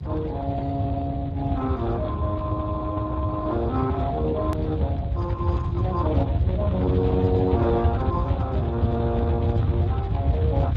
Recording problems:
codec artefacts; Speex, log-spectral distance 2 dB, nothing above 13.7 kHz
electrical hum; 60 Hz, harmonics up to 300 Hz, SNR 17 dB
rumble; below 120 Hz, SNR 0 dB
click at an edit; at 4.5 s

